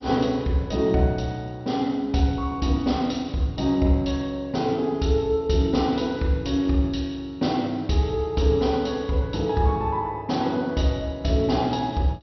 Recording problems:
lossy codec; MP2, log-spectral distance 3 dB, nothing above 5.8 kHz

